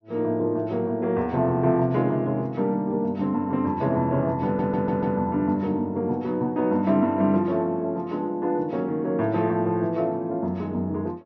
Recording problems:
low-pass filter; nothing above 6.4 kHz
stutter; at 4.5 s

